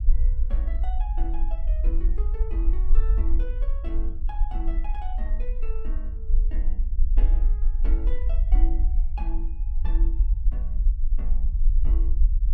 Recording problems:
rumble; below 44 Hz, SNR -15 dB

